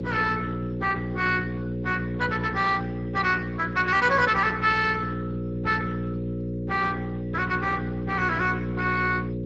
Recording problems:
lossy codec; Speex, log-spectral distance 4 dB, nothing above 7.3 kHz
hum; 60 Hz, harmonics up to 540 Hz, SNR 6 dB

